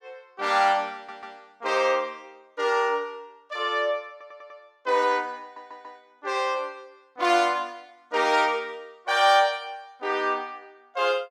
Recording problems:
audio stuttering; at 1 s, at 4 s and at 5.5 s

